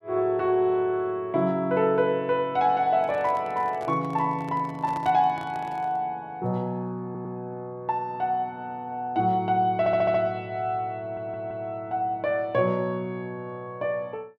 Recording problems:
handling noise; from 3 to 6 s; peak -8 dB vs average level
audio stuttering; at 7 s, at 10 s and at 11 s

